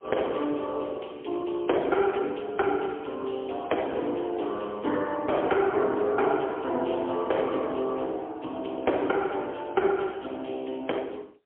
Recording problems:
phone line; 280 Hz to 3.3 kHz, AMR-NB, then MP3

